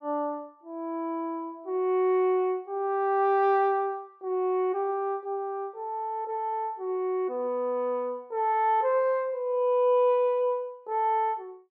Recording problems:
none

